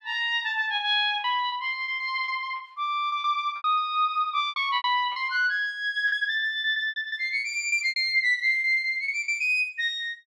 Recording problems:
packet loss; 13% of the sound replaced, filled with repeated pitch periods

